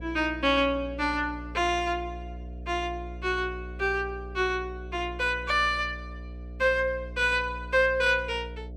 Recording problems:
hum; 60 Hz, harmonics up to 660 Hz, SNR 13 dB

